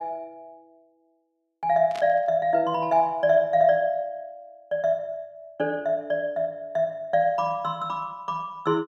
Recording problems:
static burst; at 2 s; peak -11 dB vs average level

